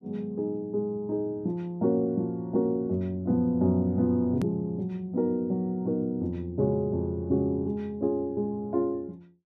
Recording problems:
hard cut with a click; at 4.5 s

